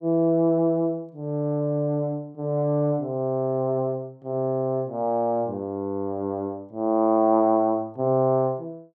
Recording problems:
none

